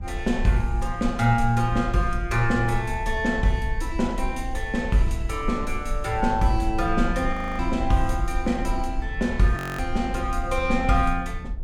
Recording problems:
rumble; below 52 Hz, SNR 8 dB
audio freezing; at 7.5 s and at 9.5 s

